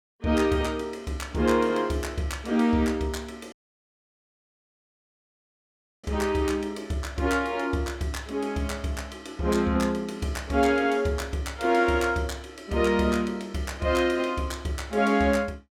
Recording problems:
dropout; at 3.5 s for 2.5 s

